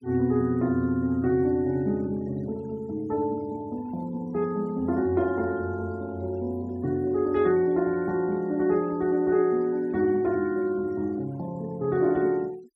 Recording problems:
denoising artefacts; signal-to-artefact ratio 27 dB

